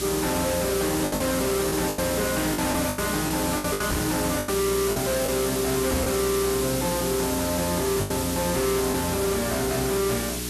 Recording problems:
distortion; soft clipping, signal-to-distortion ratio 7 dB
electrical hum; 60 Hz, harmonics up to 420 Hz, SNR 9 dB
hiss; slope +2 dB per octave, SNR 4 dB
packet loss; 7% of the sound replaced, filled with the last packet
knock on the microphone; at 4 s, at 6 s and at 8 s; peak +4 dB vs average level

